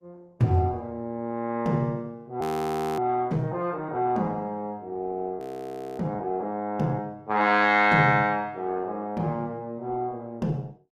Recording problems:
lossy codec; Opus, log-spectral distance 2 dB, nothing above 15.6 kHz
frozen audio; at 2.5 s for 0.5 s and at 5.5 s for 0.5 s

